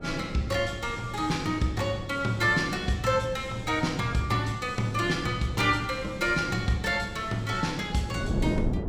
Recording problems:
wind on the microphone; below 310 Hz, SNR 10 dB

